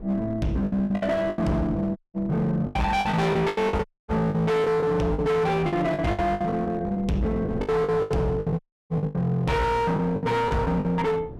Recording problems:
distorted audio; hard clipping, signal-to-distortion ratio 8 dB
wind on the microphone; below 360 Hz, SNR 16 dB
packet loss; 14% of the sound replaced, filled with the last packet
dropout; at 2 s, at 4 s and at 8.5 s

